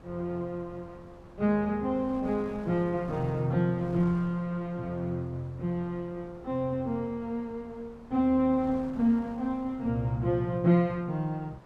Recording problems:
wind on the microphone; below 800 Hz, SNR 20 dB

